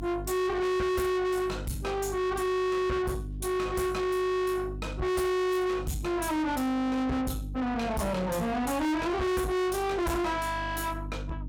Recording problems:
distorted audio; soft clipping, signal-to-distortion ratio 7 dB
electrical hum; 50 Hz, harmonics up to 350 Hz, SNR 11 dB

